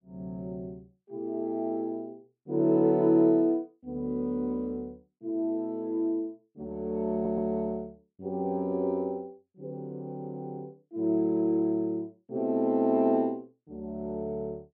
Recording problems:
audio stuttering; at 7 s

